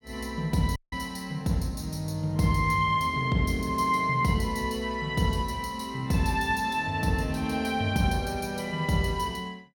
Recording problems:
audio cutting out; at 1 s

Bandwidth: 17 kHz